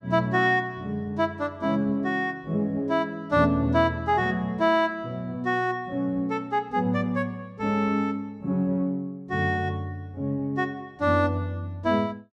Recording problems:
none

